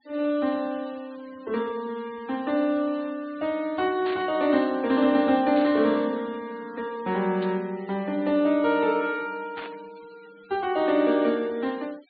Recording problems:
treble missing; nothing above 4.5 kHz
noise reduction artefacts; signal-to-artefact ratio 25 dB
burst of static; 4 times, first at 4 s; peak -9 dB vs average level

